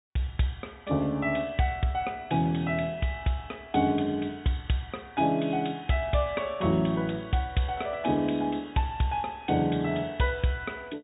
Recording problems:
low-pass filter; nothing above 3.7 kHz

